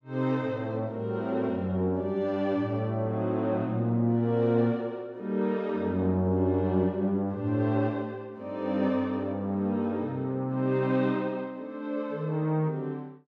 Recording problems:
none

